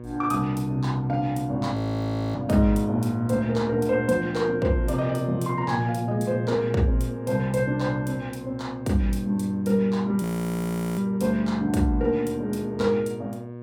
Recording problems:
electrical hum; 60 Hz, harmonics up to 1.2 kHz, SNR 13 dB
audio freezing; at 2 s for 0.5 s and at 10 s for 1 s

